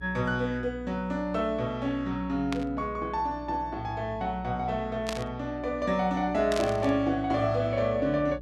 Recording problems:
electrical hum; 60 Hz, harmonics up to 420 Hz, SNR 16 dB
burst of static; at 2.5 s, at 5 s and at 6.5 s; peak -1 dB vs average level

